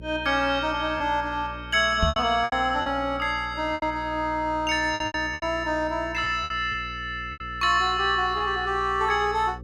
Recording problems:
hum; 60 Hz, harmonics up to 540 Hz, SNR 17 dB
packet loss; 8% of the sound replaced, filled with repeated pitch periods
microphone bump; at 2 s; peak +3 dB vs average level

